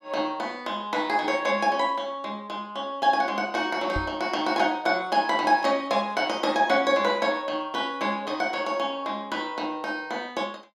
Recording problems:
microphone bump; at 4 s; peak -3 dB vs average level

